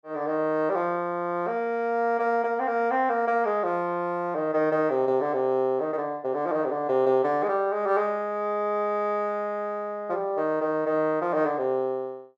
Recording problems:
none

